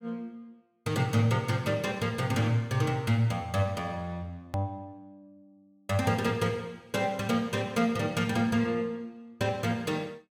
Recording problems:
hard cut with a click; at 4.5 s

